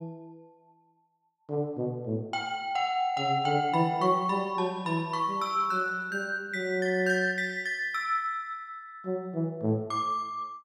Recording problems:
none

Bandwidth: 15 kHz